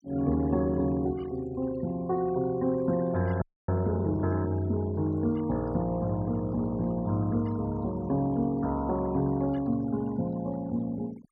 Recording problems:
noise reduction artefacts; signal-to-artefact ratio 20 dB
frozen audio; at 3.5 s

